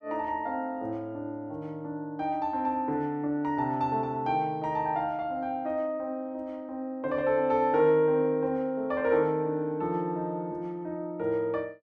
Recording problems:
none

